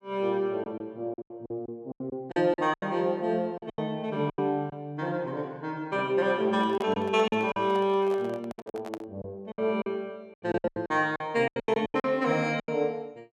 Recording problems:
lost packets; 13% of the sound replaced, filled with silence
microphone handling noise; from 6.5 to 9 s; peak -5 dB vs average level

